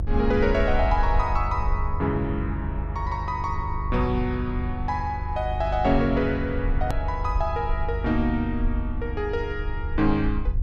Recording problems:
electrical hum; 50 Hz, harmonics up to 700 Hz, SNR 10 dB
rumble; below 76 Hz, SNR 4 dB
hard cut with a click; at 7 s

